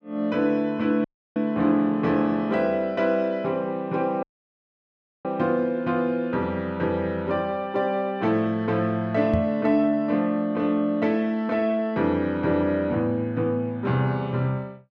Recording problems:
audio cutting out; at 1 s and at 4 s for 1 s
microphone thump; at 9.5 s; peak +2 dB vs average level

